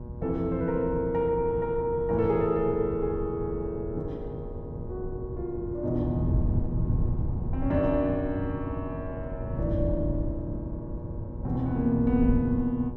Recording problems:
hum; 60 Hz, harmonics up to 1.2 kHz, SNR 16 dB
wind noise; below 130 Hz, SNR 5 dB

